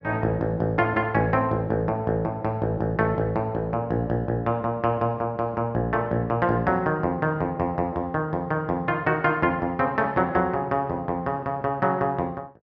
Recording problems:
none

